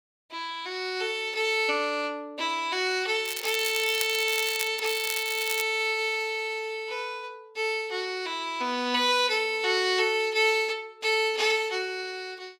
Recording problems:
crackling; from 3.5 to 4.5 s and at 5 s; loose cable, SNR 7 dB

